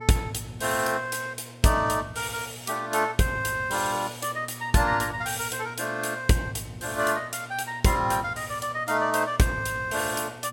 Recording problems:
hum; 60 Hz, harmonics up to 840 Hz, SNR 19 dB

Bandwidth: 17 kHz